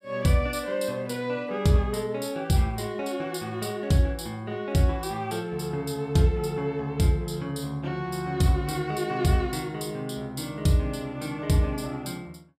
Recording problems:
none

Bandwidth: 15 kHz